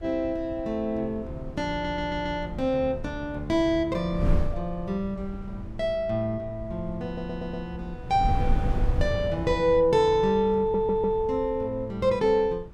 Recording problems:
wind noise; below 98 Hz, SNR 9 dB
audio stuttering; at 1.5 s, at 7 s and at 11 s

